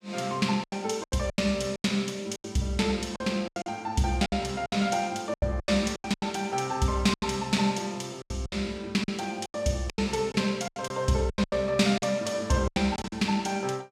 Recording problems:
lost packets; 14% of the sound replaced, filled with silence

